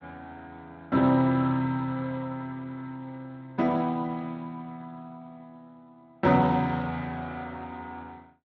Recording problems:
lossy codec; Speex, log-spectral distance 3 dB

